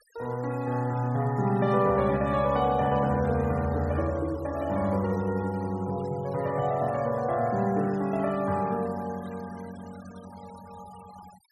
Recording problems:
noise reduction artefacts; signal-to-artefact ratio 23 dB

